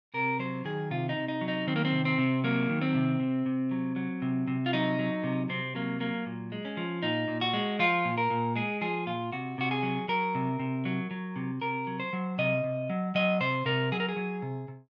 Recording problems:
none

